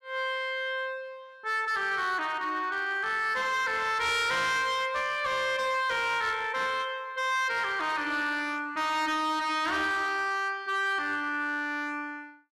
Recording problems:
distorted audio; hard clipping, uneven, signal-to-distortion ratio 11 dB

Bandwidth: 12.5 kHz